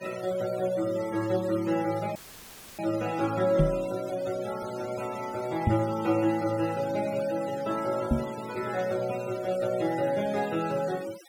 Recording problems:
denoising artefacts; signal-to-artefact ratio 16 dB
audio cutting out; at 2 s for 0.5 s; filled with static
microphone bump; at 3.5 s, at 5.5 s and at 8 s; peak +8 dB vs average level

